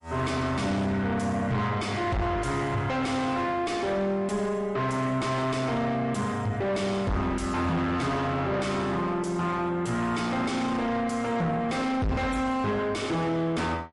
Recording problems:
lossy codec; MP3, log-spectral distance 2 dB, nothing above 11 kHz
distorted audio; soft clipping, signal-to-distortion ratio 6 dB

